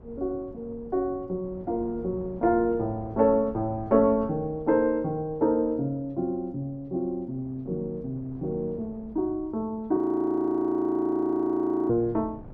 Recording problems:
wind noise; below 290 Hz, SNR 20 dB
audio freezing; at 10 s for 2 s

